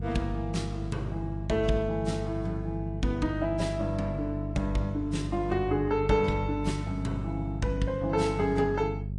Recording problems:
lossy compression; AAC, log-spectral distance 2 dB, nothing above 10.1 kHz
hum; 50 Hz, harmonics up to 400 Hz, SNR 5 dB

